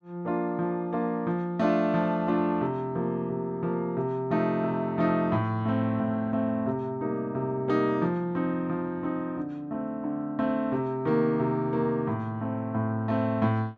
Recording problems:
none

